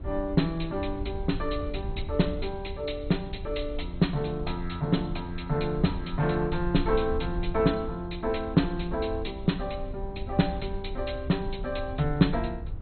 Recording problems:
lossy codec; MP2, log-spectral distance 5 dB, nothing above 4.2 kHz
low-frequency rumble; below 74 Hz, SNR 9 dB

